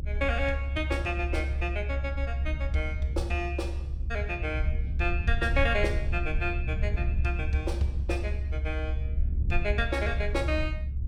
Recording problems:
low-frequency rumble; below 70 Hz, strongest tone 68 Hz, SNR -1 dB

